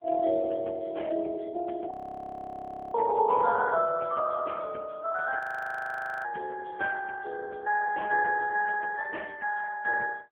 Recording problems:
phone line; 240 Hz to 2.8 kHz, AMR-NB
frozen audio; at 2 s for 1 s and at 5.5 s for 1 s

